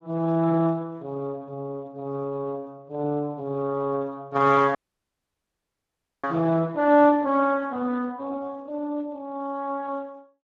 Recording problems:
codec artefacts; Speex, log-spectral distance 2 dB, nothing above 7.3 kHz
audio cutting out; at 5 s for 1.5 s

